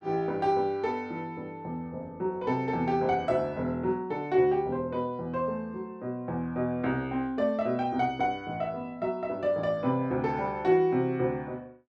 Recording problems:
none

